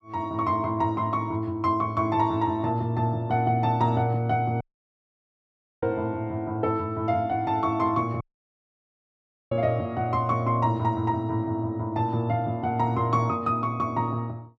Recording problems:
dropout; at 4.5 s for 1 s and at 8 s for 1.5 s

